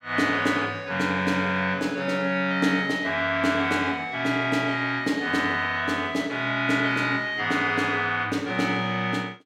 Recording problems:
none

